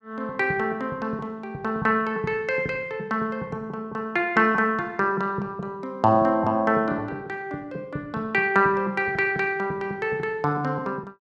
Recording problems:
none

